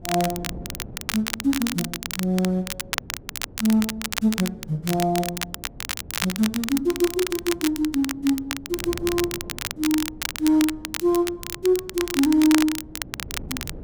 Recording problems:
wind on the microphone; below 290 Hz, SNR 19 dB
crackling; vinyl, SNR 6 dB

